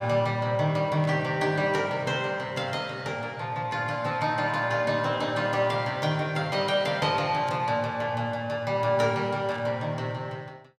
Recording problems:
burst of static; 4 times, first at 1 s; peak -12 dB vs average level

